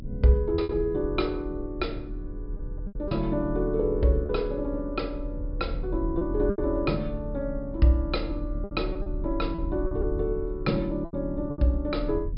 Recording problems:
treble missing; nothing above 5.5 kHz
low-frequency rumble; below 70 Hz, strongest tone 38 Hz, SNR 8 dB
lost packets; 6% of the sound replaced, filled with repeated pitch periods

